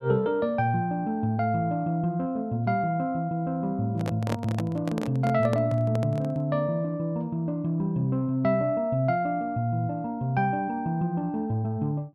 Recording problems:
handling noise; from 4 to 6.5 s; peak -1 dB vs average level

